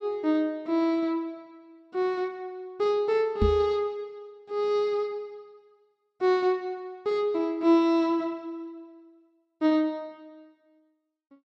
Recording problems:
microphone bump; at 3.5 s; peak +4 dB vs average level

